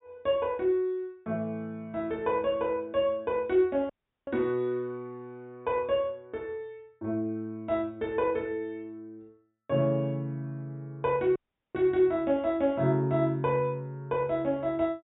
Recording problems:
treble cut off; nothing above 4 kHz
audio cutting out; at 4 s and at 11 s

